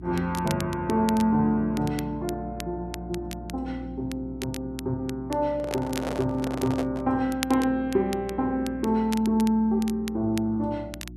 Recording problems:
hum; 60 Hz, harmonics up to 360 Hz, SNR 15 dB
crackling; vinyl, SNR 15 dB
handling noise; from 5.5 to 7 s; peak -1 dB vs average level

